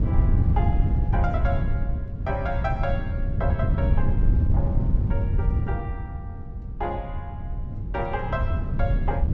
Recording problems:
treble cut off; nothing above 8 kHz
wind on the microphone; below 110 Hz, SNR -7 dB

